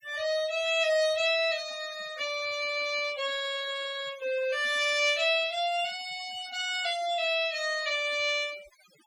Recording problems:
noise reduction artefacts; signal-to-artefact ratio 18 dB

